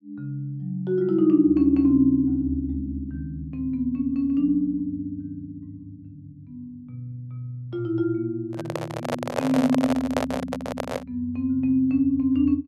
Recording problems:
microphone handling noise; from 8.5 to 11 s; peak +3 dB vs average level

